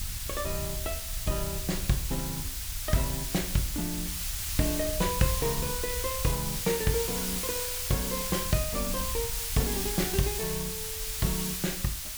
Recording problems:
background hiss; slope +3 dB per octave, SNR 0 dB
wind on the microphone; below 74 Hz, SNR 9 dB

